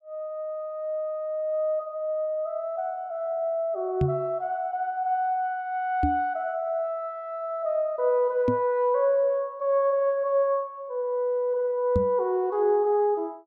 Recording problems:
microphone bump; 4 times, first at 4 s; peak +4 dB vs average level

